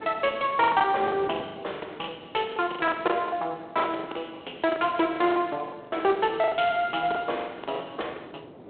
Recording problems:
telephone audio; 320 Hz to 3.5 kHz, G.726
wind on the microphone; below 610 Hz, SNR 19 dB
packet loss; 15% of the sound replaced, filled with the last packet

